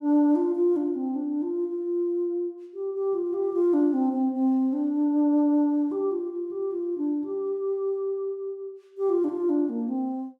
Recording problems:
none

